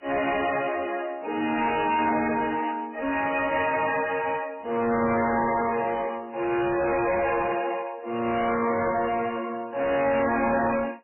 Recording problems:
lossy compression; MP3, then AAC, log-spectral distance 6 dB, nothing above 2.5 kHz
distorted audio; soft clipping, signal-to-distortion ratio 7 dB

